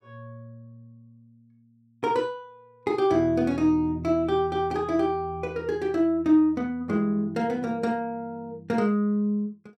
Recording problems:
none

